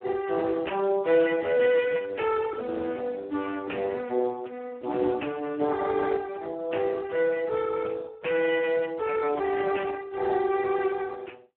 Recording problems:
telephone audio; 260 Hz to 2.9 kHz, Speex

